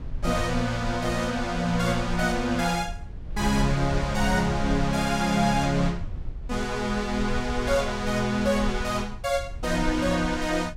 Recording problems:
low-frequency rumble; below 72 Hz, SNR 10 dB

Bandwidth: 16.5 kHz